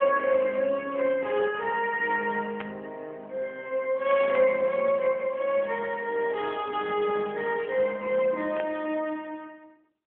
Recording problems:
telephone audio; 240 Hz to 3.3 kHz, AMR-NB
burst of static; at 2.5 s, at 4 s and at 8.5 s; peak -8 dB vs average level

